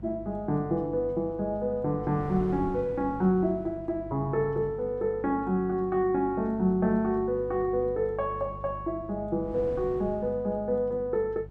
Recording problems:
electrical hum; 50 Hz, harmonics up to 550 Hz, SNR 17 dB
wind on the microphone; below 340 Hz, SNR 20 dB

